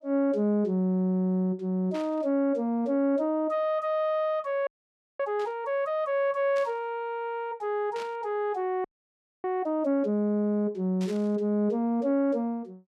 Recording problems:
static burst; 5 times, first at 2 s; peak -11 dB vs average level
frozen audio; at 4.5 s for 0.5 s and at 9 s for 0.5 s

